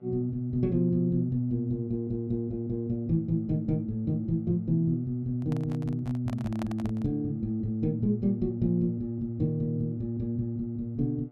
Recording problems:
hum; 60 Hz, harmonics up to 2 kHz, SNR 33 dB
handling noise; from 5.5 to 7 s; peak -6 dB vs average level

